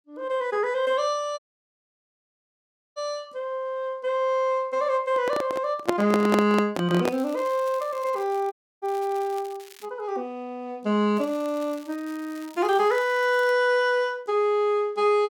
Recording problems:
dropout; at 1.5 s for 1.5 s and at 8.5 s
microphone handling noise; from 5 to 7 s; peak +5 dB vs average level
crackling; from 7 to 10 s and from 11 to 14 s; loose cable, SNR 24 dB

